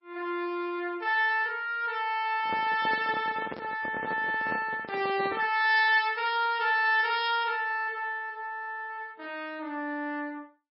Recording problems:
lossy compression; MP3, log-spectral distance 2 dB, nothing above 4.6 kHz
microphone handling noise; from 2.5 to 5.5 s; peak -5 dB vs average level

